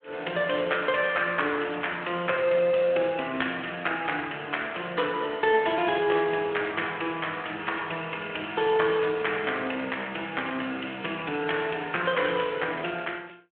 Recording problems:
telephone audio; 220 Hz to 3.4 kHz, Speex

